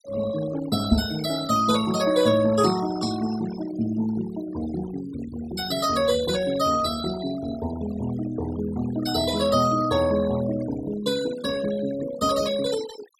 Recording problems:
denoising artefacts; signal-to-artefact ratio 14 dB
microphone bump; at 1 s; peak +9 dB vs average level

